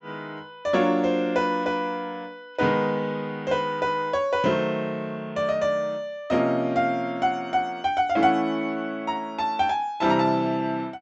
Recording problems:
treble missing; nothing above 8 kHz

